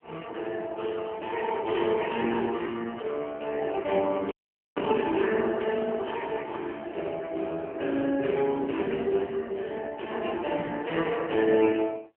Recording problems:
phone line; 260 Hz to 3.5 kHz, AMR-NB
dropout; at 4.5 s

